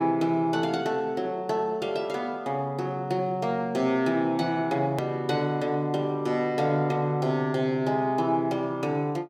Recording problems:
hard cut with a click; at 5 s

